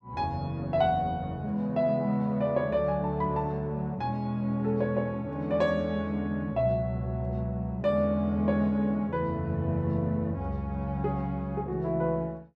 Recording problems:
none

